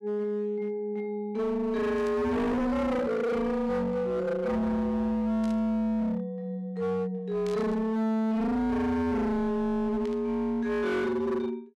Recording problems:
distorted audio; hard clipping, signal-to-distortion ratio 7 dB
static burst; 4 times, first at 2 s; peak -13 dB vs average level

